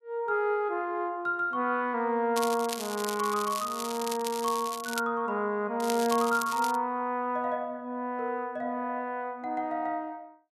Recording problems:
crackle; from 2.5 to 5 s and at 6 s; loose cable, SNR 9 dB

